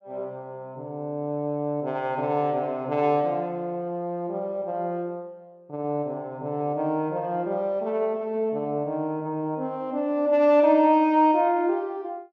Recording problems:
none

